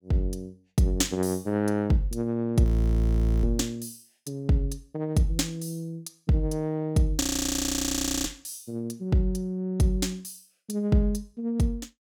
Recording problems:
frozen audio; at 2.5 s for 1 s and at 7 s for 1 s

